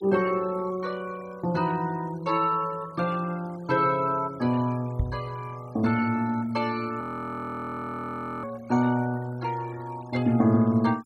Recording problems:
noise reduction artefacts; signal-to-artefact ratio 24 dB
microphone thump; at 5 s; peak +4 dB vs average level
audio freezing; at 7 s for 1.5 s

